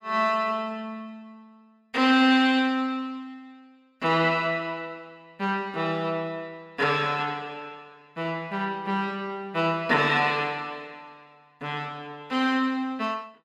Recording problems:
none

